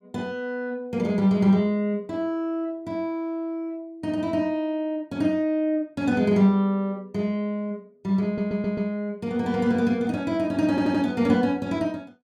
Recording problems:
stutter; at 8.5 s and at 11 s

